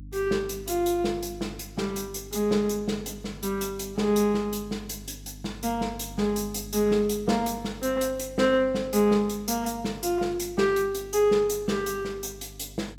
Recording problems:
hum; 50 Hz, harmonics up to 300 Hz, SNR 18 dB

